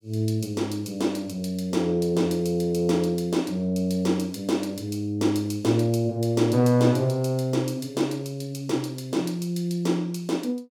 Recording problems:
none

